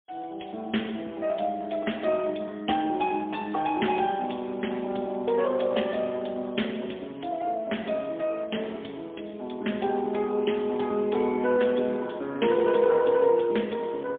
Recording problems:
telephone audio; 190 Hz to 3.5 kHz, AMR-NB, then MP3

